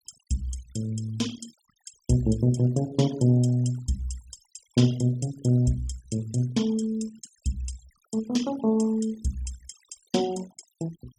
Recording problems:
noise reduction artefacts; signal-to-artefact ratio 19 dB

